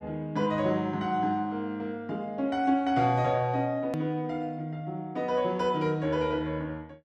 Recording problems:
edit click; at 4 s

